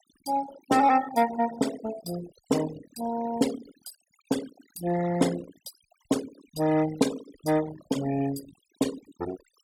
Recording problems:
denoising artefacts; signal-to-artefact ratio 13 dB

